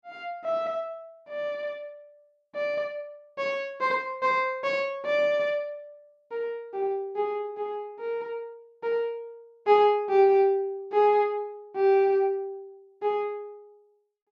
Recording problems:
none

